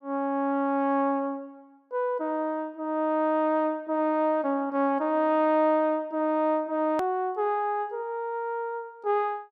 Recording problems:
hard cut with a click; at 7 s

